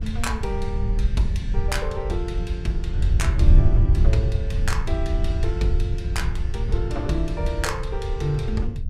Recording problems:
wind on the microphone; below 76 Hz, SNR -5 dB

